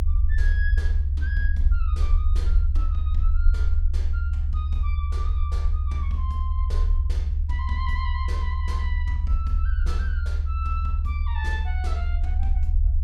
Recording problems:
low-frequency rumble; below 74 Hz, SNR -12 dB

